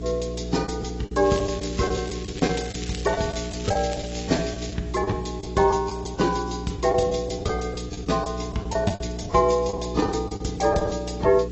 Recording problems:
lossy codec; AAC, log-spectral distance 7 dB, nothing above 7.8 kHz
hum; 60 Hz, harmonics up to 420 Hz, SNR 9 dB
background hiss; slope -1 dB per octave, SNR 26 dB
lost packets; 11% of the sound replaced, filled with the last packet
crackle; from 1 to 4.5 s; loose cable, SNR 13 dB

